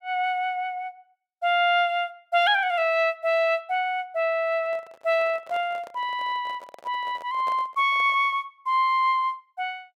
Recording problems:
microphone handling noise; from 4.5 to 8.5 s; peak -11 dB vs average level

